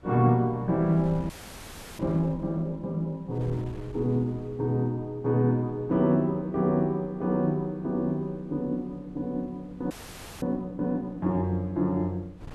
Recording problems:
wind on the microphone; below 190 Hz, SNR 21 dB
audio freezing; at 1.5 s for 0.5 s and at 10 s for 0.5 s

